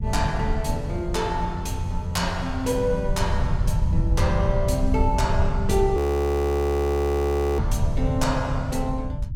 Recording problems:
low-frequency rumble; below 110 Hz, SNR 2 dB
frozen audio; at 6 s for 1.5 s

